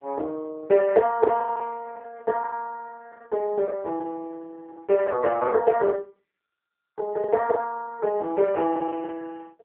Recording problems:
phone line; 340 Hz to 2.8 kHz, AMR-NB
lost packets; 10% of the sound replaced, filled with the last packet

